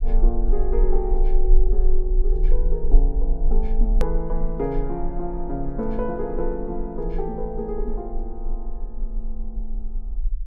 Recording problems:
rumble; below 34 Hz, strongest tone 24 Hz, SNR -3 dB
edit click; at 4 s

